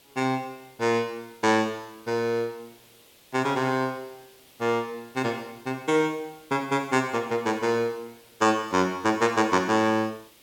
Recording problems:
hiss; SNR 27 dB

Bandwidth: 17 kHz